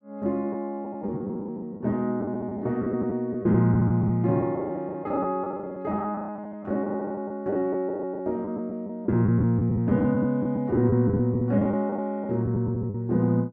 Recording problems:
packet loss; 12% of the sound replaced, filled with the last packet

